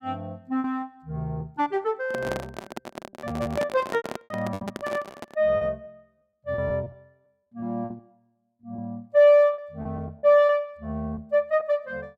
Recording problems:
packet loss; 11% of the sound replaced, filled with repeated pitch periods
microphone handling noise; from 2 to 5.5 s; peak -2 dB vs average level

